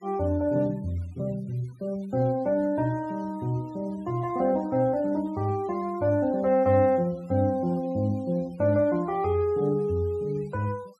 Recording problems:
denoising artefacts; signal-to-artefact ratio 27 dB

